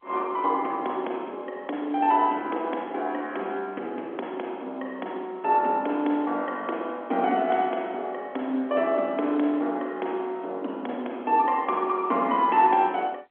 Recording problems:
telephone audio; 220 Hz to 3.6 kHz, G.711

